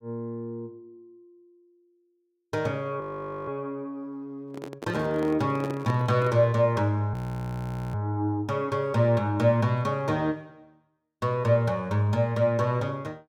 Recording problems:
audio freezing; at 3 s and at 7 s for 1 s
microphone handling noise; from 4.5 to 6.5 s; peak -4 dB vs average level

